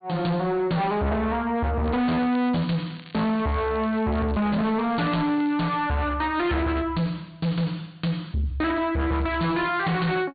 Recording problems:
treble missing; nothing above 4.6 kHz
distorted audio; soft clipping, signal-to-distortion ratio 7 dB
crackling; from 2 to 5.5 s and at 9 s; loose cable, SNR 23 dB

